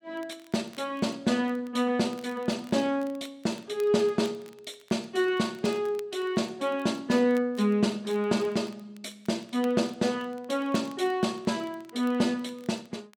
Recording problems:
crackling; vinyl, SNR 27 dB

